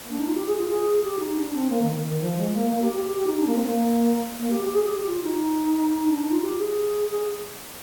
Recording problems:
hiss; slope -2 dB per octave, SNR 12 dB

